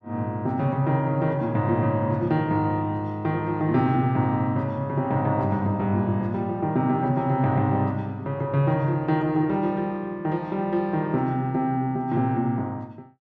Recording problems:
none

